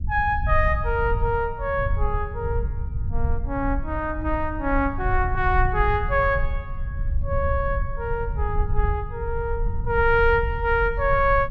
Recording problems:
low-frequency rumble; below 78 Hz, SNR 4 dB

